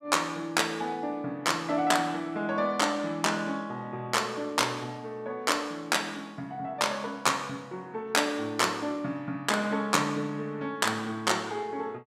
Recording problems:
none

